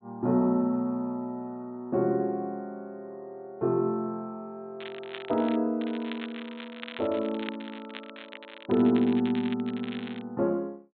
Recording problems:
low-pass filter; nothing above 4 kHz
crackling; at 5 s, from 6 to 8.5 s and from 8.5 to 10 s; loose cable, SNR 15 dB

